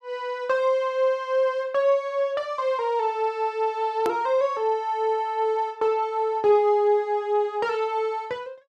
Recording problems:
hard cut with a click; at 4 s

